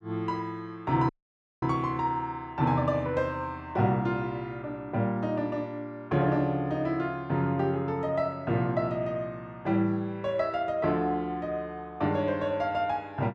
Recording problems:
audio cutting out; at 1 s for 0.5 s

